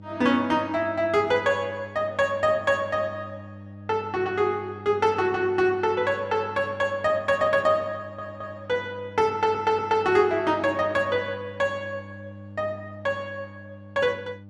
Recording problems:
electrical hum; 50 Hz, harmonics up to 600 Hz, SNR 19 dB
audio stuttering; at 8 s and at 9.5 s

